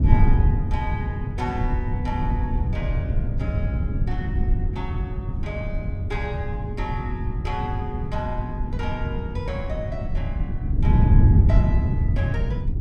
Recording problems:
wind noise; below 120 Hz, SNR -9 dB

